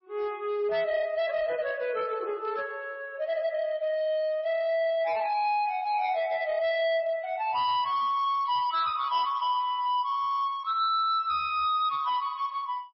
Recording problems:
lossy compression; MP3, log-spectral distance 2 dB, nothing above 5.3 kHz
distortion; hard clipping, signal-to-distortion ratio 11 dB

